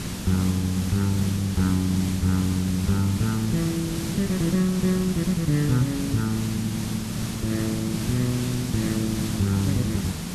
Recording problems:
hiss; SNR 5 dB

